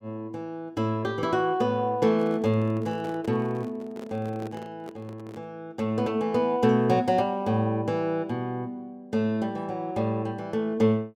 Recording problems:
microphone handling noise; from 2 to 5.5 s; peak -10 dB vs average level

